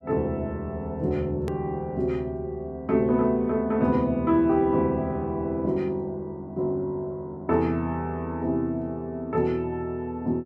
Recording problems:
click at an edit; at 1.5 s

